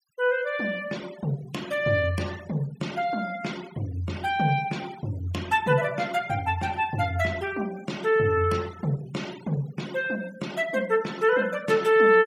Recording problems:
denoising artefacts; signal-to-artefact ratio 18 dB

